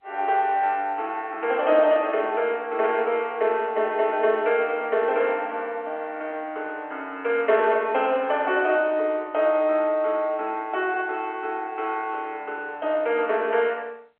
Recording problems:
telephone audio; 320 Hz to 3.3 kHz, G.711

